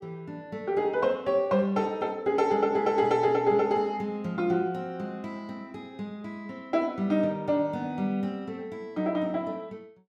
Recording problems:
none

